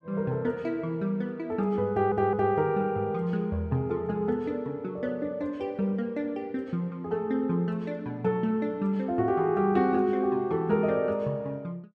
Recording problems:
stutter; at 2 s

